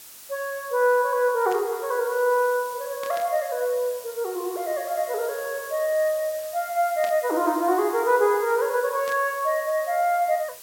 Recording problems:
background hiss; slope +1 dB per octave, SNR 16 dB
static burst; 4 times, first at 1.5 s; peak -10 dB vs average level

